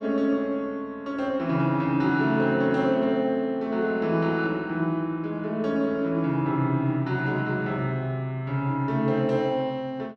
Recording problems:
none

